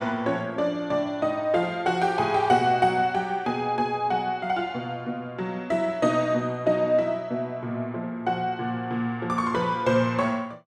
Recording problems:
none

